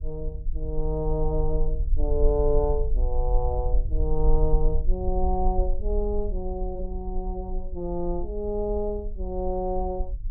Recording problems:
low-frequency rumble; below 46 Hz, strongest tone 22 Hz, SNR 1 dB

